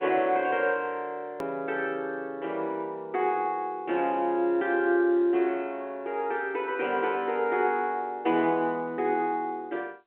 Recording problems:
telephone audio; 220 Hz to 3.4 kHz, G.711
hard cut with a click; at 1.5 s

